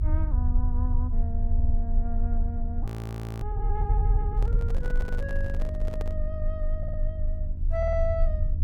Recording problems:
electrical hum; 50 Hz, harmonics up to 700 Hz, SNR 8 dB
rumble; below 72 Hz, strongest tone 24 Hz, SNR -8 dB
stutter; at 1.5 s, at 7 s and at 8 s
audio freezing; at 3 s for 0.5 s
microphone handling noise; from 4.5 to 6 s; peak +1 dB vs average level

